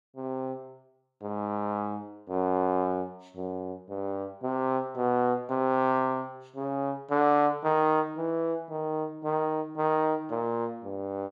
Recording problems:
none

